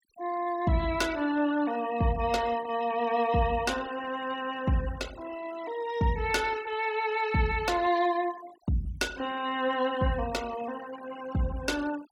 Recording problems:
noise reduction artefacts; signal-to-artefact ratio 17 dB

